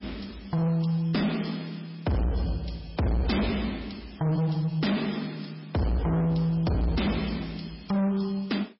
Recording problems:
codec artefacts; MP3, log-spectral distance 4 dB, nothing above 5.3 kHz
distortion; hard clipping, signal-to-distortion ratio 7 dB

